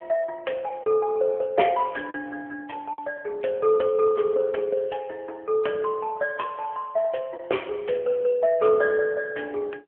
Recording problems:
telephone audio; 320 Hz to 3.2 kHz, AMR-NB
packet loss; 1.7% of the sound replaced, filled with the last packet

